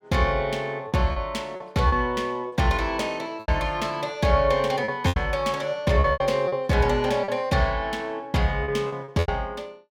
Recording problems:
lost packets; 8% of the sound replaced, filled with repeated pitch periods

